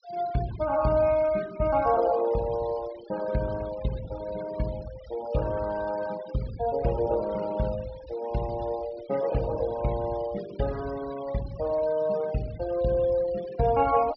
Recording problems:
treble missing; nothing above 5.5 kHz
denoising artefacts; signal-to-artefact ratio 18 dB

